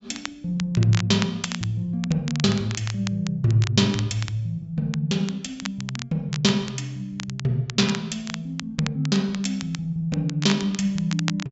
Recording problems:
treble cut off; nothing above 7.6 kHz
crackle; vinyl, SNR 12 dB

